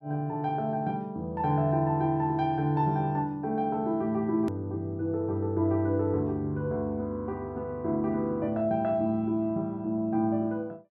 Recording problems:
edit click; at 4.5 s

